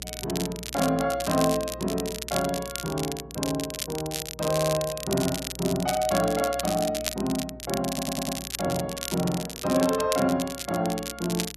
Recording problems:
hum; 60 Hz, harmonics up to 540 Hz, SNR 19 dB
crackle; vinyl, SNR 6 dB
stutter; at 4.5 s and at 8 s

